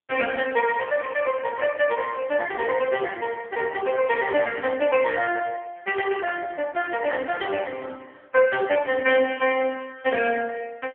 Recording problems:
telephone audio; 280 Hz to 3.1 kHz, AMR-NB

